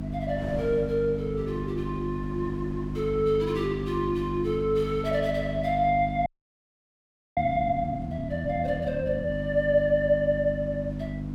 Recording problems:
hum; 50 Hz, harmonics up to 300 Hz, SNR 6 dB
wind on the microphone; below 460 Hz, SNR 18 dB
frozen audio; at 6.5 s for 1 s

